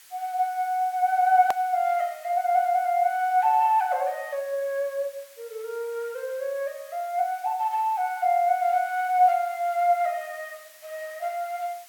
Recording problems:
background hiss; SNR 24 dB
hard cut with a click; at 1.5 s

